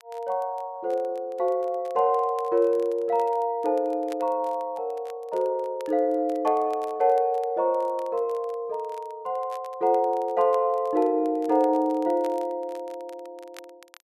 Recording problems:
crackle; vinyl, SNR 29 dB

